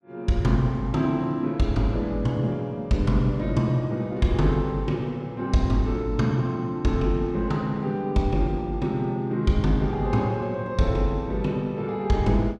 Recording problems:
none

